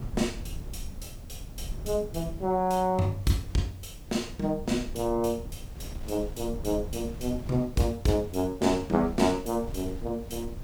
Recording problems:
hiss; slope +2 dB per octave, SNR 29 dB
low-frequency rumble; below 120 Hz, SNR 14 dB
wind noise; below 150 Hz, SNR 18 dB

